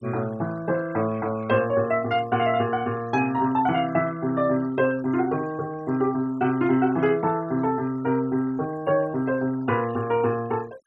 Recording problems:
noise reduction artefacts; signal-to-artefact ratio 22 dB

